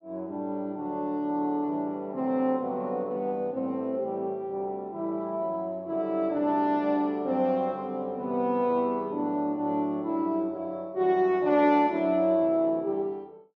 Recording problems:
none

